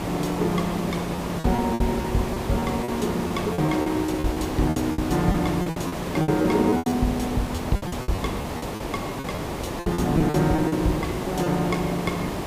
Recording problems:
hum; 50 Hz, harmonics up to 1.4 kHz, SNR 15 dB
hiss; slope -7 dB per octave, SNR 5 dB
packet loss; 12% of the sound replaced, filled with repeated pitch periods

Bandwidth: 15 kHz